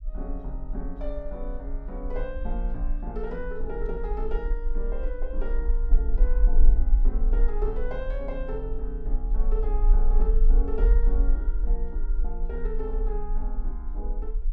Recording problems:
rumble; below 40 Hz, strongest tone 26 Hz, SNR -8 dB

